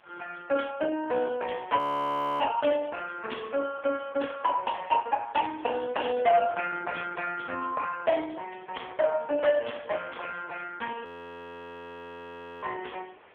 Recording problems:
telephone audio; 300 Hz to 2.8 kHz, AMR-NB
distorted audio; hard clipping, signal-to-distortion ratio 8 dB
background hiss; SNR 27 dB
audio freezing; at 2 s for 0.5 s and at 11 s for 1.5 s

